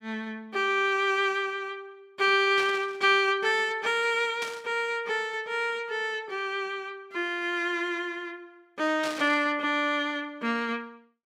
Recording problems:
static burst; at 2.5 s, at 4.5 s and at 9 s; peak -6 dB vs average level

